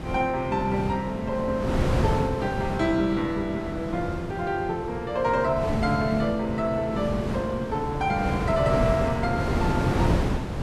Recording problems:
wind on the microphone; below 430 Hz, SNR 3 dB

